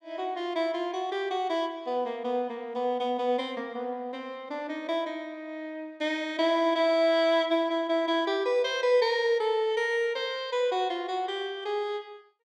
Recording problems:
none

